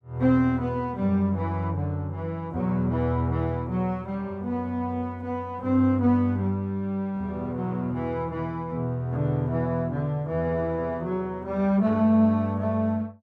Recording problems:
none

